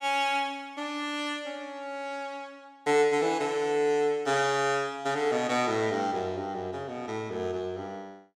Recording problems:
none

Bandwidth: 17 kHz